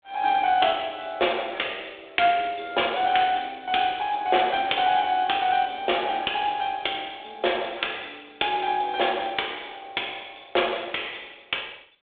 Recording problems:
phone line; 320 Hz to 3.6 kHz, G.726

